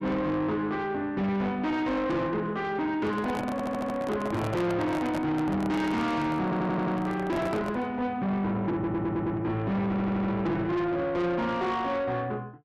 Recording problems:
distortion; soft clipping, signal-to-distortion ratio 7 dB
handling noise; from 3 to 8 s; peak +1 dB vs average level
audio stuttering; 4 times, first at 3.5 s

